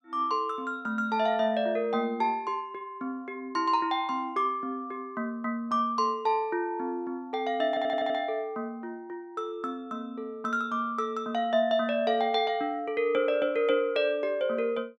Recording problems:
audio stuttering; at 7.5 s

